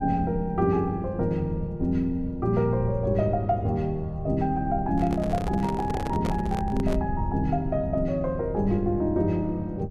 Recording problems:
rumble; below 110 Hz, SNR 10 dB
microphone handling noise; from 5 to 7 s; peak -1 dB vs average level

